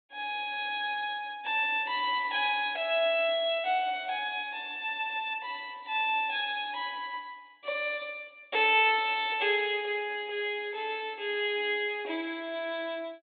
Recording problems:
low-pass filter; nothing above 4 kHz

